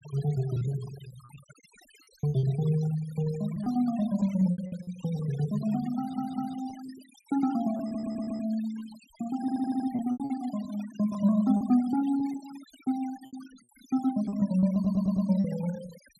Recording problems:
denoising artefacts; signal-to-artefact ratio 21 dB
packet loss; 8% of the sound replaced, filled with repeated pitch periods
audio stuttering; 4 times, first at 6 s

